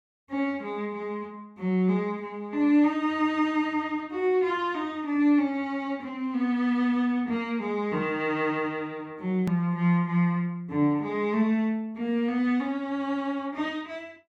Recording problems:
edit click; at 9.5 s

